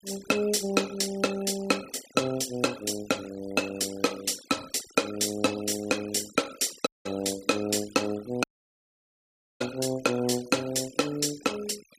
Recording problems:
denoising artefacts; signal-to-artefact ratio 17 dB
dropout; at 7 s and at 8.5 s for 1 s

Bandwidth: 15 kHz